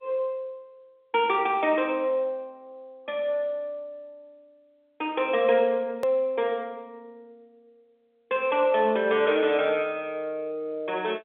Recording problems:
telephone audio; 260 Hz to 3.6 kHz, G.711
click at an edit; at 6 s

